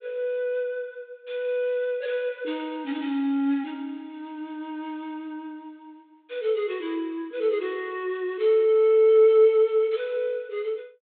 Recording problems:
treble missing; nothing above 4 kHz

